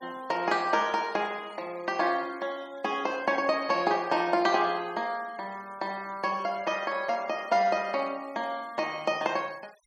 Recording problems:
noise reduction artefacts; signal-to-artefact ratio 25 dB

